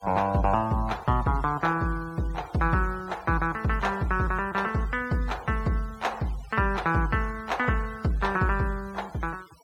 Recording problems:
denoising artefacts; signal-to-artefact ratio 22 dB

